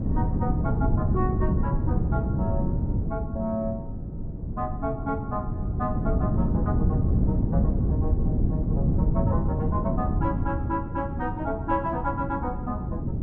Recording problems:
wind noise; below 190 Hz, SNR -5 dB

